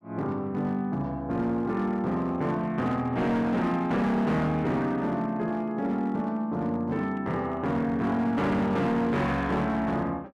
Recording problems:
distortion; hard clipping, signal-to-distortion ratio 11 dB

